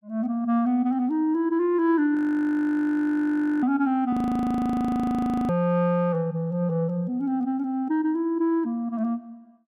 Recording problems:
frozen audio; at 2 s for 1.5 s and at 4 s for 1.5 s

